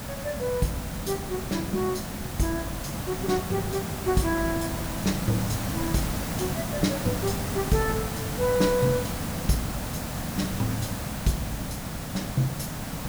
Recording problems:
background hiss; slope -4 dB per octave, SNR 2 dB

